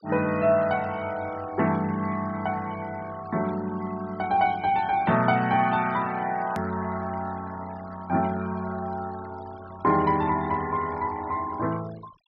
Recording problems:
treble cut off; nothing above 5.5 kHz
noise reduction artefacts; signal-to-artefact ratio 20 dB
hard cut with a click; at 6.5 s

